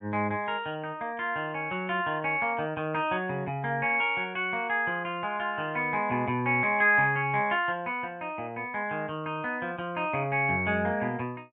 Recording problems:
none

